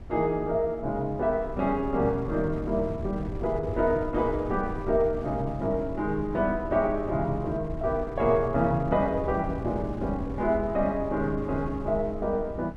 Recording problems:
wind noise; below 150 Hz, SNR 11 dB

